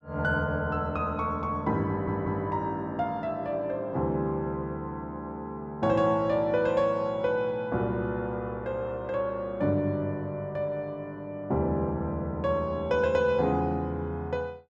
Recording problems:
stutter; at 2 s

